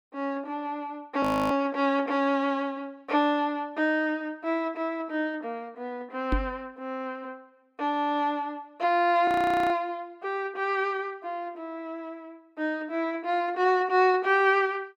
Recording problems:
audio freezing; at 1 s and at 9.5 s
microphone bump; at 6.5 s; peak +3 dB vs average level

